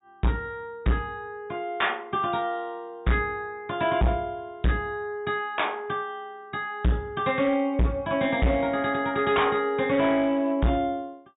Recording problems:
low-pass filter; nothing above 4 kHz
distortion; hard clipping, signal-to-distortion ratio 7 dB

